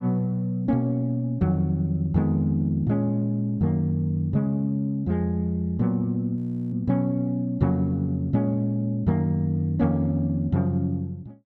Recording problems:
frozen audio; at 6.5 s

